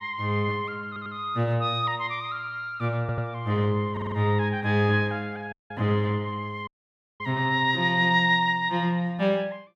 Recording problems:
audio stuttering; at 1 s, at 3 s and at 4 s
audio cutting out; at 5.5 s and at 6.5 s for 0.5 s

